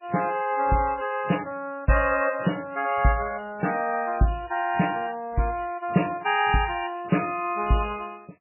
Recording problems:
lossy compression; MP3, log-spectral distance 7 dB, nothing above 2.6 kHz

